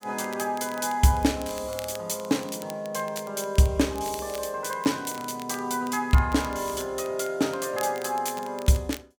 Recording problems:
crackling; vinyl, SNR 18 dB

